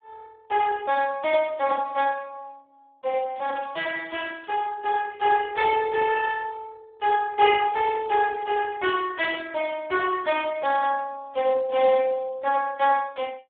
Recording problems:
telephone audio; 340 Hz to 2.9 kHz, Speex
crackle; from 3.5 to 4.5 s and at 8 s; loose cable, SNR 27 dB

